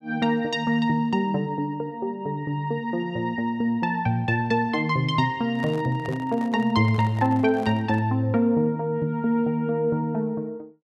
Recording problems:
handling noise; from 5.5 to 8 s; peak -10 dB vs average level

